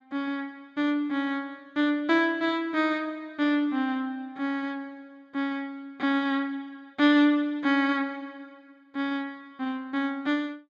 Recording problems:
none

